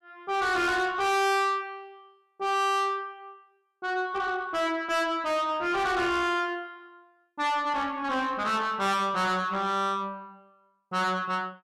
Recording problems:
distorted audio; soft clipping, signal-to-distortion ratio 6 dB

